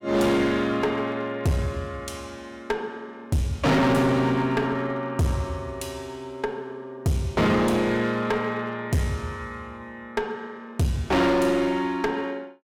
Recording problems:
distorted audio; hard clipping, uneven, signal-to-distortion ratio 5 dB

